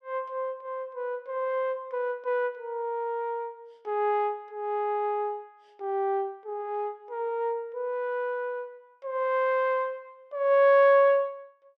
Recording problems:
none

